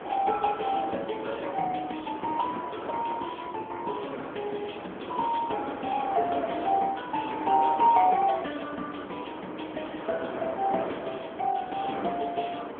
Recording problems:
phone line; 220 Hz to 3.5 kHz, AMR-NB
wind on the microphone; below 1.1 kHz, SNR 9 dB

